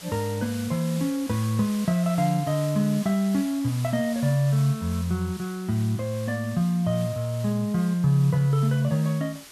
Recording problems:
background hiss; slope 0 dB per octave, SNR 17 dB

